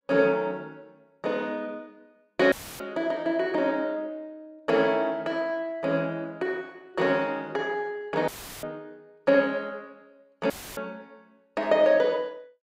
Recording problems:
dropout; at 2.5 s, at 8.5 s and at 11 s; filled with static

